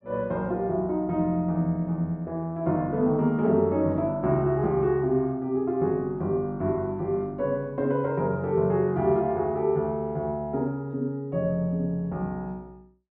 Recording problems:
treble missing; nothing above 8 kHz

